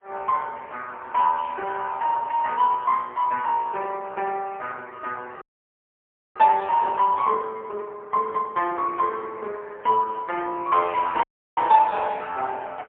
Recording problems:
phone line; 280 Hz to 3.6 kHz, AMR-NB, then MP3
audio cutting out; at 5.5 s for 1 s and at 11 s

